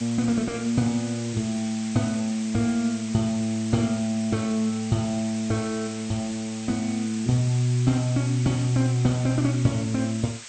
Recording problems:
lossy compression; MP2, log-spectral distance 9 dB, nothing above 13.1 kHz
hiss; slope +3 dB per octave, SNR 13 dB

